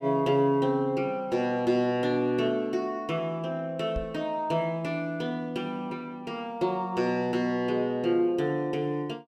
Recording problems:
microphone bump; at 4 s; peak -3 dB vs average level

